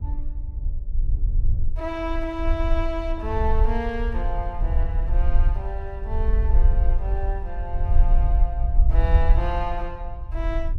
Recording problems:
low-frequency rumble; below 54 Hz, SNR -6 dB

